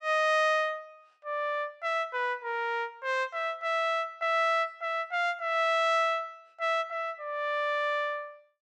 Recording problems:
none

